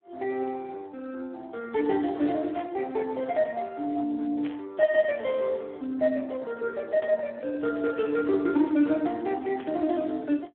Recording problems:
telephone audio; 240 Hz to 3.1 kHz, Speex
burst of static; 4 times, first at 2.5 s; peak -12 dB vs average level

